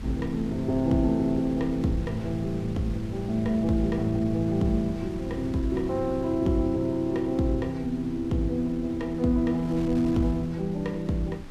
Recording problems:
wind on the microphone; below 190 Hz, SNR 14 dB

